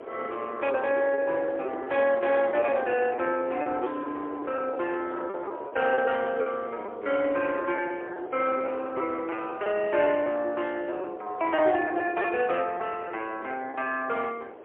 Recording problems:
phone line; 320 Hz to 3.3 kHz, AMR-NB, then MP3
wind noise; below 700 Hz, SNR 13 dB
lost packets; 9% of the sound replaced, filled with repeated pitch periods

